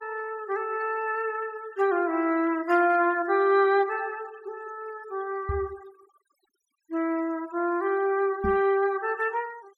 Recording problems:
noise reduction artefacts; signal-to-artefact ratio 25 dB
microphone bump; at 5.5 s and at 8.5 s; peak -2 dB vs average level

